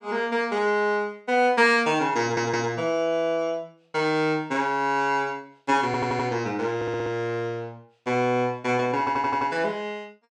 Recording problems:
stutter; 4 times, first at 2 s

